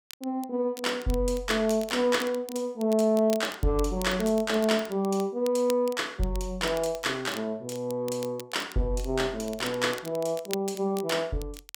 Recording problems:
crackle; vinyl, SNR 17 dB

